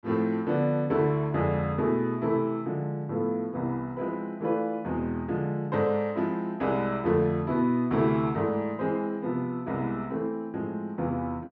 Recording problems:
none

